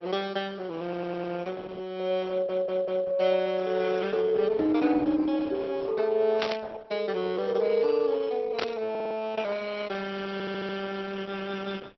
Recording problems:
treble missing; nothing above 5.7 kHz
lossy compression; Opus, log-spectral distance 4 dB
stutter; 4 times, first at 1 s
static burst; at 6.5 s and at 8.5 s; peak +2 dB vs average level

